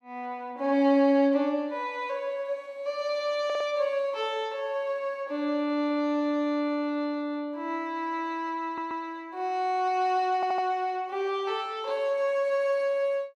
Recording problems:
audio stuttering; at 3.5 s, at 8.5 s and at 10 s

